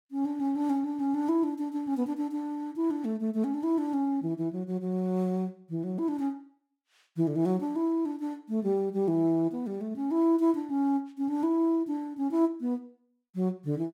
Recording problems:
none

